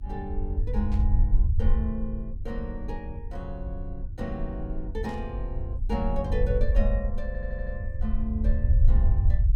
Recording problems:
electrical hum; 50 Hz, harmonics up to 350 Hz, SNR 17 dB
low-frequency rumble; below 72 Hz, SNR -6 dB
burst of static; at 1 s and at 5 s; peak -11 dB vs average level
audio stuttering; at 7.5 s

